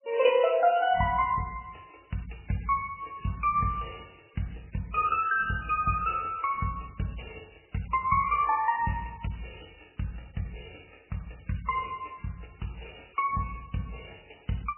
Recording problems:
lossy compression; AAC, then MP3, log-spectral distance 9 dB, nothing above 3 kHz

